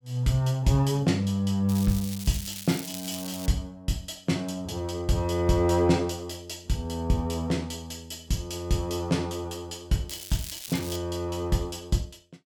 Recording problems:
crackling; from 1.5 to 3.5 s and at 10 s; loose cable, SNR 10 dB

